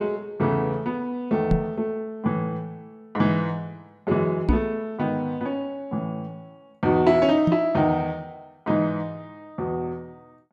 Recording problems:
microphone bump; at 1.5 s, at 4.5 s and at 7.5 s; peak +6 dB vs average level

